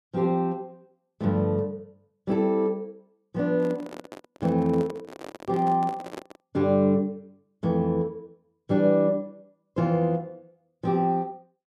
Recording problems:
microphone handling noise; from 3.5 to 6.5 s; peak -8 dB vs average level

